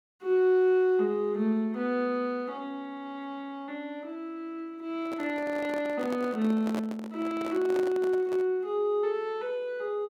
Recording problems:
microphone handling noise; from 5 to 8.5 s; peak -3 dB vs average level

